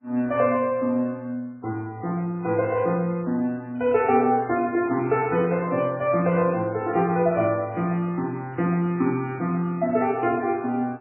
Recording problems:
lossy codec; MP3, log-spectral distance 2 dB, nothing above 2.5 kHz

